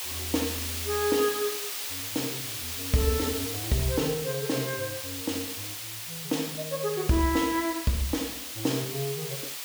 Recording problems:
background hiss; slope +3 dB per octave, SNR 3 dB

